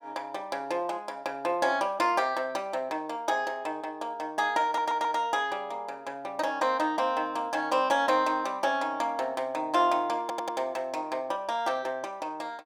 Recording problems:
stutter; at 4.5 s and at 10 s

